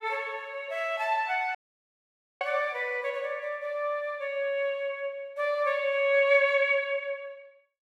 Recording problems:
dropout; at 1.5 s for 1 s

